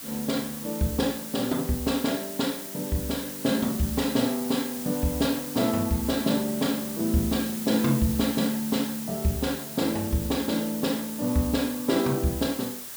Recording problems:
hiss; slope 0 dB per octave, SNR 8 dB

